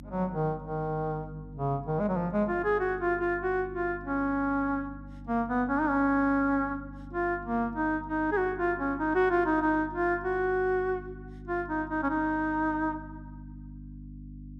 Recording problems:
hum; 50 Hz, harmonics up to 300 Hz, SNR 16 dB

